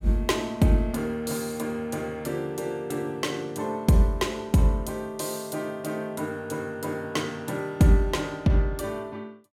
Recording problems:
none

